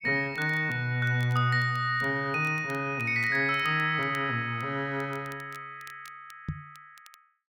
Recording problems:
crackle; vinyl, SNR 28 dB
microphone thump; at 6.5 s; peak -2 dB vs average level

